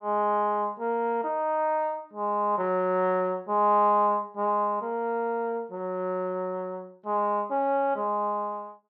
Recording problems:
none

